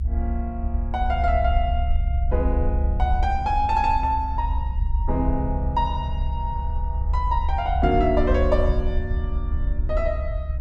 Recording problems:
rumble; below 68 Hz, SNR 0 dB

